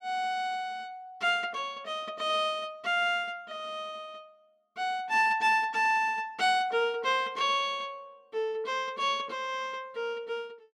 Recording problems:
none

